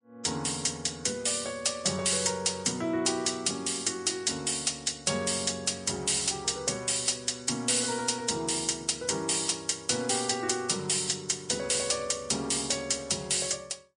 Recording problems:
lossy compression; MP3, log-spectral distance 10 dB, nothing above 9.5 kHz
distortion; soft clipping, signal-to-distortion ratio 11 dB

